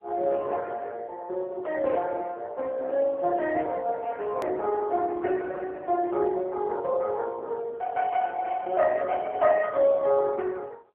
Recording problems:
telephone audio; 340 Hz to 3 kHz, AMR-NB
hard cut with a click; at 4.5 s

